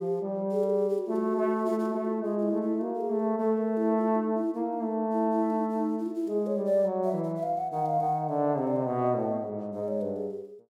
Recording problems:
none

